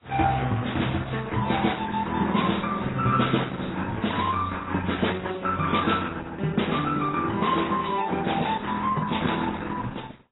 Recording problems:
codec artefacts; Opus, then AAC, log-spectral distance 6 dB, nothing above 3.9 kHz

